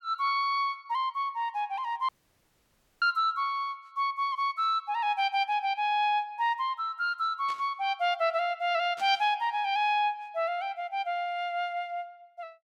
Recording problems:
audio cutting out; at 2 s for 1 s
static burst; at 7.5 s and at 9 s; peak -11 dB vs average level

